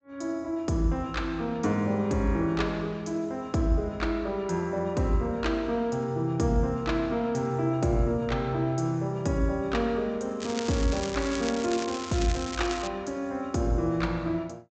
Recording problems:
treble cut off; nothing above 8 kHz
crackling; from 10 to 13 s; loose cable, SNR 10 dB

